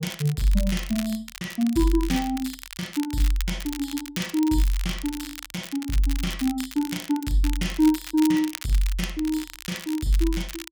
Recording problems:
crackle; vinyl, SNR 12 dB

